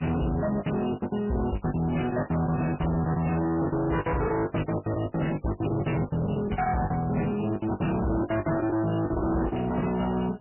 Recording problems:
lossy compression; MP3, log-spectral distance 5 dB, nothing above 2.9 kHz
distorted audio; hard clipping, signal-to-distortion ratio 7 dB
packet loss; 18% of the sound replaced, filled with the last packet

